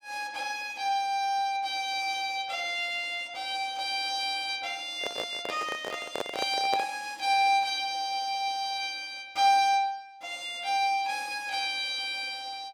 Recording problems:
microphone handling noise; from 5 to 7 s; peak +1 dB vs average level

